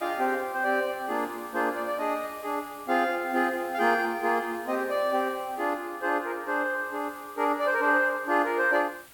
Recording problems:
background hiss; SNR 22 dB

